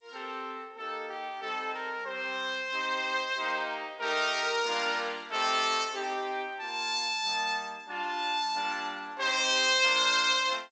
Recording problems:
lossy codec; G.722, log-spectral distance 3 dB, nothing above 7.3 kHz

